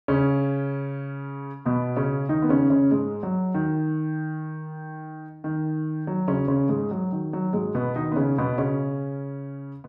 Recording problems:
none

